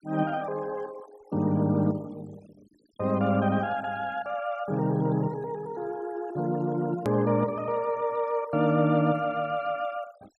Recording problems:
denoising artefacts; signal-to-artefact ratio 25 dB
hard cut with a click; at 7 s

